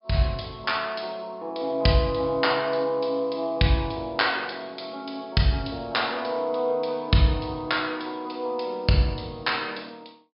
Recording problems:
treble missing; nothing above 5.5 kHz

